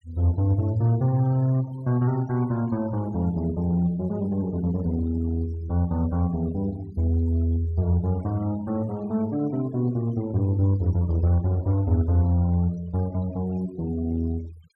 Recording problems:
denoising artefacts; signal-to-artefact ratio 23 dB

